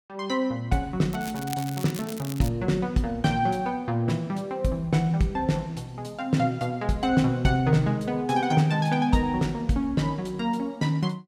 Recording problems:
crackle; from 1 to 2.5 s; loose cable, SNR 14 dB

